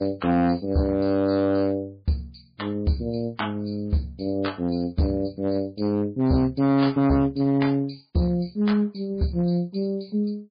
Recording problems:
codec artefacts; MP3, log-spectral distance 3 dB, nothing above 4.8 kHz
distortion; hard clipping, uneven, signal-to-distortion ratio 11 dB

